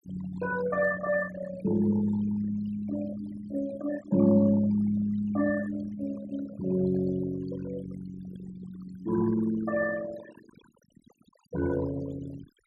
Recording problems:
noise reduction artefacts; signal-to-artefact ratio 14 dB

